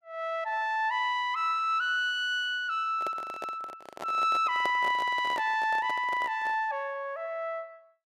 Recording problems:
handling noise; from 3 to 6.5 s; peak -3 dB vs average level

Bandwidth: 14.5 kHz